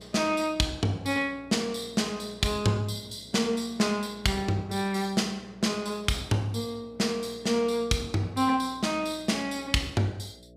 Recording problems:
electrical hum; 60 Hz, harmonics up to 660 Hz, SNR 26 dB

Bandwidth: 15.5 kHz